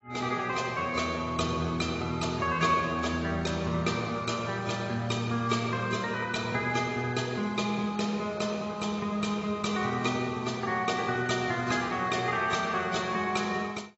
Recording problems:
lossy codec; AAC, log-spectral distance 4 dB, nothing above 7.6 kHz

